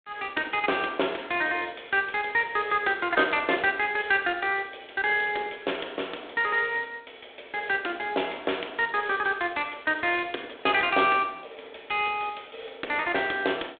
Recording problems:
telephone audio; 260 Hz to 3.8 kHz, G.726

